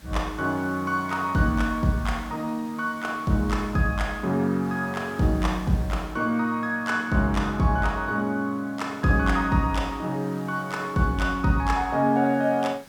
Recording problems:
hiss; slope -2 dB per octave, SNR 24 dB

